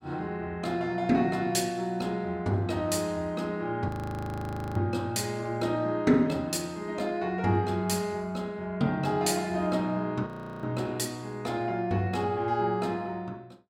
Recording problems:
frozen audio; at 4 s for 1 s and at 10 s

